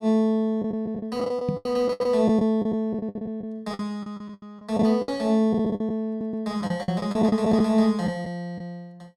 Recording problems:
packet loss; 14% of the sound replaced, filled with the last packet
microphone thump; at 1.5 s; peak +1 dB vs average level
stutter; at 6 s

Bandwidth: 15.5 kHz